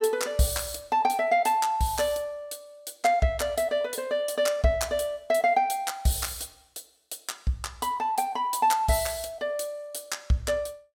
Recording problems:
none

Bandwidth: 17 kHz